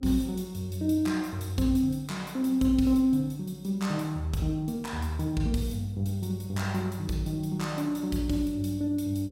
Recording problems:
hum; 60 Hz, harmonics up to 540 Hz, SNR 27 dB

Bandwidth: 16.5 kHz